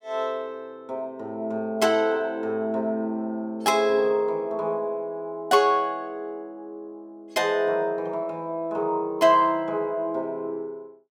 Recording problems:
none

